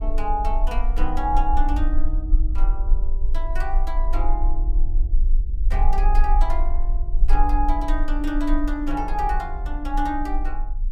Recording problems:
rumble; below 38 Hz, strongest tone 18 Hz, SNR -3 dB

